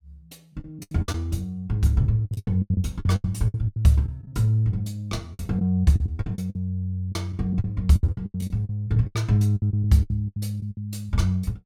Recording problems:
packet loss; 17% of the sound replaced, filled with the last packet

